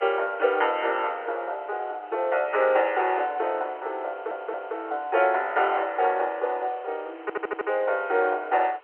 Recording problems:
phone line; 340 Hz to 3.3 kHz, G.711
background hiss; SNR 25 dB
stutter; at 4 s and at 7 s

